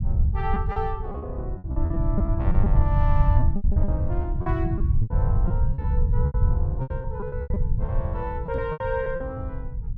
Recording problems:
low-frequency rumble; below 100 Hz, SNR -7 dB
packet loss; 14% of the sound replaced, filled with repeated pitch periods
microphone thump; at 8.5 s; peak +1 dB vs average level

